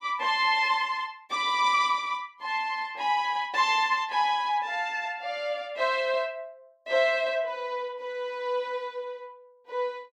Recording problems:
none

